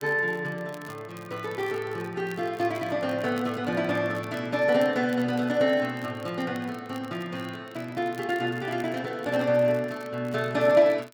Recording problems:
crackling; vinyl, SNR 25 dB

